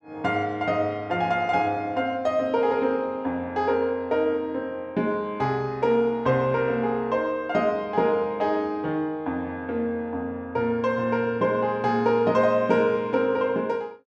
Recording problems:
none

